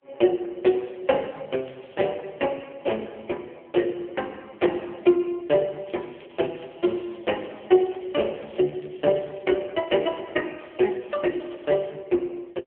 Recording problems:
phone line; 170 Hz to 3.4 kHz, AMR-NB
crackle; at 1.5 s, from 6 to 9.5 s and from 11 to 12 s; loose cable, SNR 27 dB

